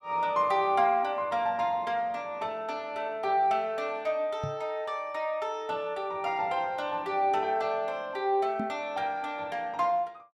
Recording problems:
knock on the microphone; at 4.5 s and at 8.5 s; peak -1 dB vs average level

